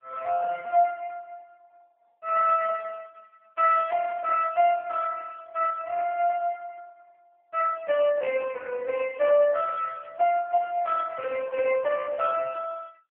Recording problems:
telephone audio; 240 Hz to 2.9 kHz, AMR-NB

